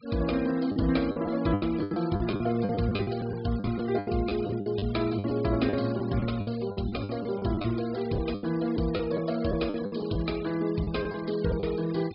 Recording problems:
low-pass filter; nothing above 5.1 kHz
noise reduction artefacts; signal-to-artefact ratio 18 dB
packet loss; 13% of the sound replaced, filled with the last packet

